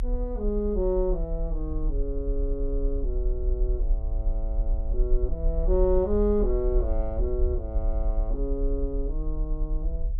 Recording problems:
low-frequency rumble; below 44 Hz, strongest tone 32 Hz, SNR 0 dB

